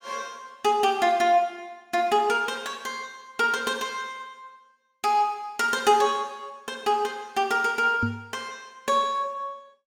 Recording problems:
microphone bump; at 8 s; peak +1 dB vs average level

